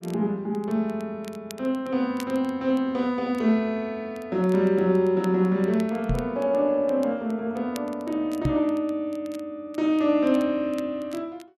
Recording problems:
crackling; vinyl, SNR 25 dB
knock on the microphone; at 6 s and at 8.5 s; peak +3 dB vs average level

